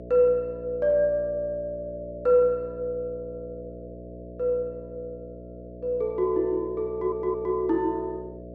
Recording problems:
electrical hum; 60 Hz, harmonics up to 660 Hz, SNR 15 dB
audio stuttering; at 7 s

